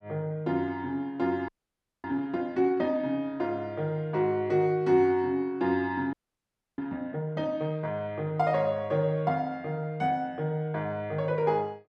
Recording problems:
frozen audio; at 1.5 s for 0.5 s and at 6 s for 0.5 s

